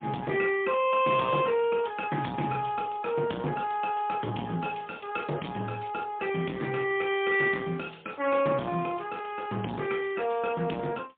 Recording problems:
phone line; 170 Hz to 3.4 kHz, AMR-NB, then MP3
distorted audio; soft clipping, signal-to-distortion ratio 10 dB

